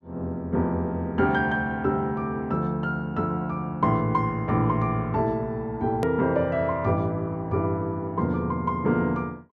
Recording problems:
click at an edit; at 6 s

